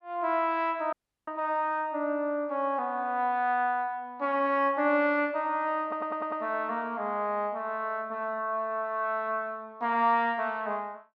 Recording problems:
audio cutting out; at 1 s
audio stuttering; at 6 s

